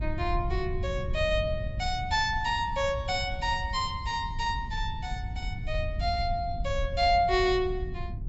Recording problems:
low-pass filter; nothing above 8 kHz
low-frequency rumble; below 96 Hz, SNR 7 dB

